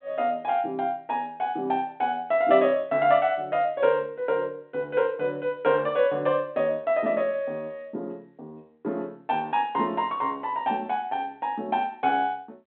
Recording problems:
phone line; 240 Hz to 3.8 kHz, G.726

